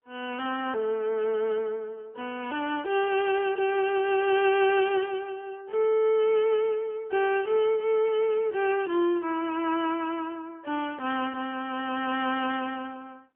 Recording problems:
phone line; 280 Hz to 3.4 kHz, AMR-NB, then MP3

